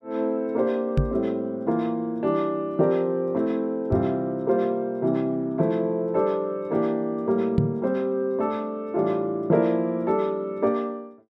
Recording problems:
microphone thump; at 1 s, at 4 s and at 7.5 s; peak +7 dB vs average level

